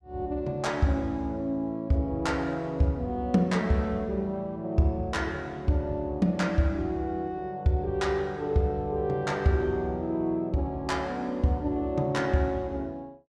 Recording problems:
none

